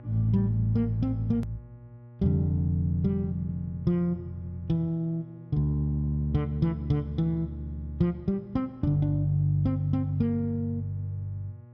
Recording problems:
mains hum; 60 Hz, harmonics up to 1.1 kHz, SNR 20 dB
edit click; at 1.5 s

